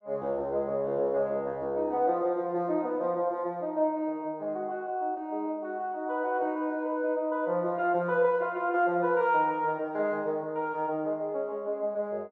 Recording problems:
none

